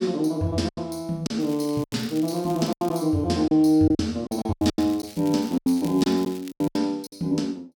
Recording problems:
lost packets; 12% of the sound replaced, filled with silence
crackling; from 1.5 to 3 s and from 4.5 to 7 s; loose cable, SNR 21 dB

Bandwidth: 18.5 kHz